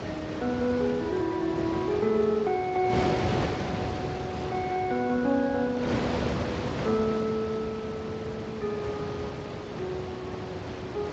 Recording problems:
codec artefacts; Speex, log-spectral distance 3 dB
wind noise; below 910 Hz, SNR 3 dB

